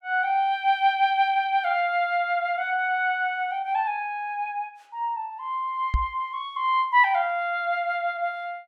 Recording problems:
microphone thump; at 6 s; peak +3 dB vs average level

